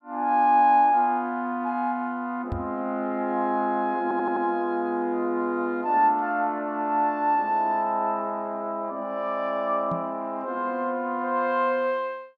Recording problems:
microphone thump; at 2.5 s and at 10 s; peak -3 dB vs average level
audio stuttering; at 4 s

